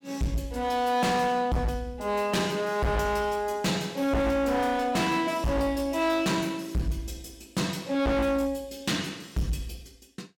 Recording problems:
distortion; hard clipping, signal-to-distortion ratio 6 dB

